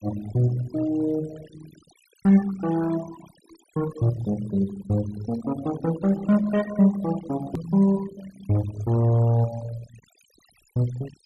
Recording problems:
noise reduction artefacts; signal-to-artefact ratio 17 dB
edit click; at 7.5 s

